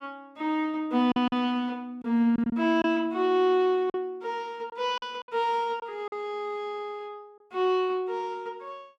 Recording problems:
lost packets; 5% of the sound replaced, filled with silence

